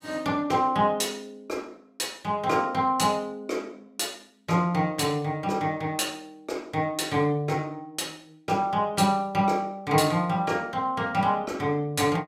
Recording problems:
none

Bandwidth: 16 kHz